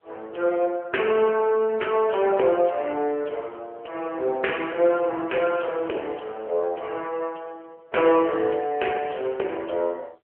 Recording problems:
telephone audio; 300 Hz to 3.1 kHz, AMR-NB

